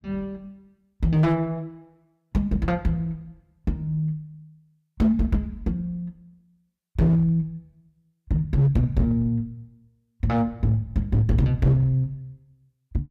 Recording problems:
distorted audio; hard clipping, signal-to-distortion ratio 7 dB

